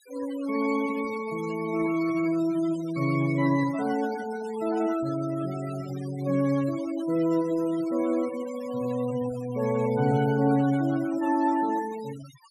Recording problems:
denoising artefacts; signal-to-artefact ratio 18 dB

